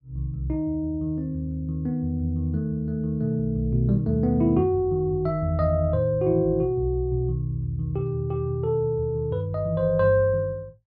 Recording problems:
none

